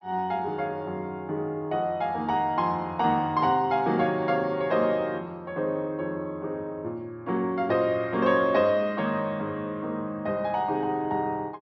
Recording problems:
low-pass filter; nothing above 6 kHz

